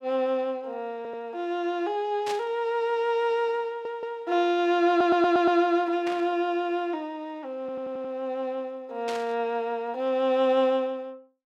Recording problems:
stutter; 4 times, first at 1 s
burst of static; at 2.5 s, at 6 s and at 9 s; peak -5 dB vs average level

